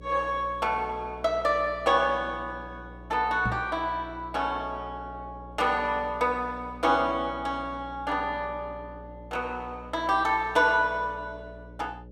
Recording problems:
hum; 60 Hz, harmonics up to 600 Hz, SNR 18 dB
knock on the microphone; at 3.5 s; peak 0 dB vs average level

